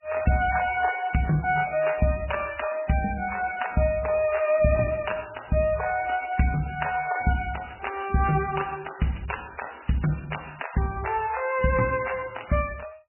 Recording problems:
lossy codec; MP3, log-spectral distance 9 dB, nothing above 2.9 kHz

